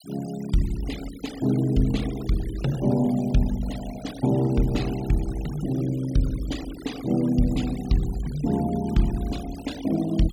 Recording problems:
denoising artefacts; signal-to-artefact ratio 17 dB

